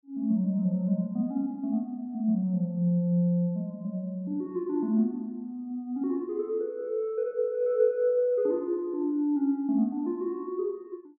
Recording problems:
none

